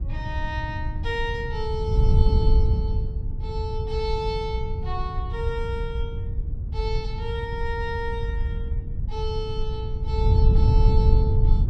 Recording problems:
wind noise; below 90 Hz, SNR -6 dB

